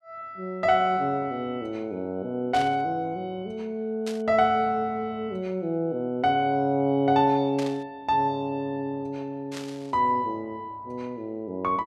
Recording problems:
static burst; 4 times, first at 2.5 s; peak -6 dB vs average level

